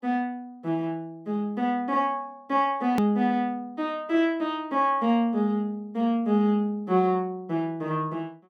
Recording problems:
edit click; at 3 s

